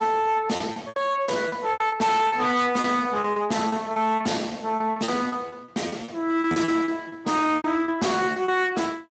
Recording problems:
codec artefacts; Speex, log-spectral distance 4 dB, nothing above 7.8 kHz
distortion; hard clipping, signal-to-distortion ratio 10 dB
lost packets; 15% of the sound replaced, filled with repeated pitch periods

